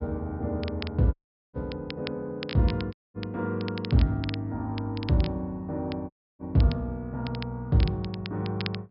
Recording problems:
low-pass filter; nothing above 5.5 kHz
crackle; vinyl, SNR 14 dB
audio cutting out; at 1 s, at 3 s and at 6 s

